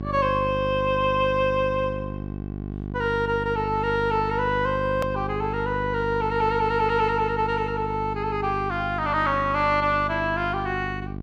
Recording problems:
hum; 50 Hz, harmonics up to 800 Hz, SNR 8 dB
click at an edit; at 5 s

